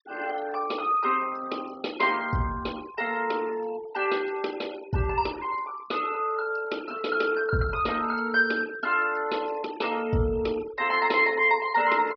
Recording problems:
low-pass filter; nothing above 5.5 kHz
noise reduction artefacts; signal-to-artefact ratio 19 dB

